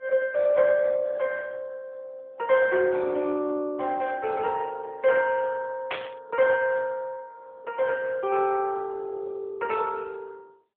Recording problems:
telephone audio; 320 Hz to 3.7 kHz, AMR-NB
burst of static; at 6 s; peak -1 dB vs average level

